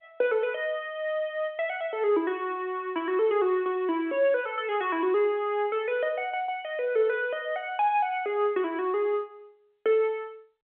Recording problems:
phone line; 220 Hz to 3.4 kHz, G.711

